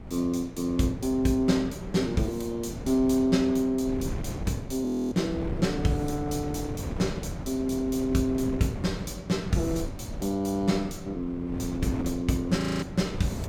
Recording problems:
wind noise; below 290 Hz, SNR 9 dB
audio freezing; at 5 s and at 13 s

